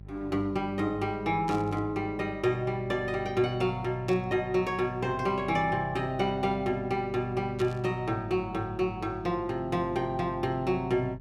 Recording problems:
hum; 50 Hz, harmonics up to 450 Hz, SNR 17 dB
burst of static; at 1.5 s, at 4 s and at 7.5 s; peak -10 dB vs average level

